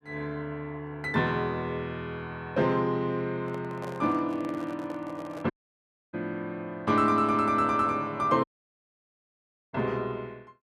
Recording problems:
handling noise; from 3.5 to 5.5 s; peak -8 dB vs average level
audio cutting out; at 5.5 s for 0.5 s and at 8.5 s for 1.5 s

